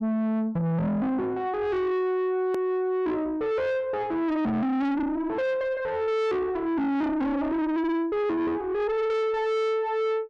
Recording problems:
distorted audio; soft clipping, signal-to-distortion ratio 6 dB
click at an edit; at 2.5 s

